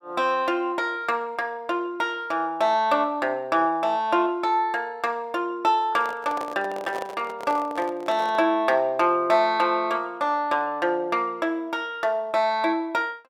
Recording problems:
handling noise; from 6 to 8.5 s; peak -6 dB vs average level

